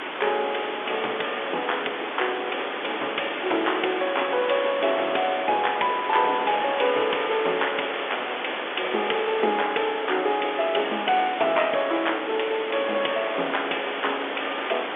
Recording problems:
phone line; 280 Hz to 3.5 kHz, G.711
hiss; SNR 5 dB
wind on the microphone; below 520 Hz, SNR 19 dB

